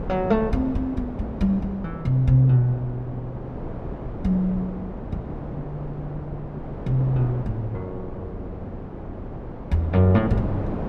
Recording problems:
wind noise; below 450 Hz, SNR 10 dB

